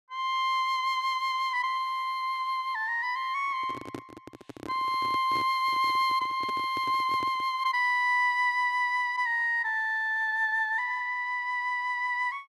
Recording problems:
handling noise; from 3.5 to 7.5 s; peak -6 dB vs average level

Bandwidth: 13.5 kHz